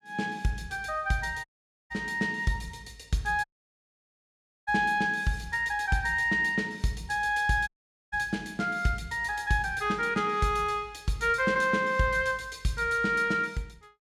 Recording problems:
audio cutting out; at 1.5 s, at 3.5 s for 1 s and at 7.5 s

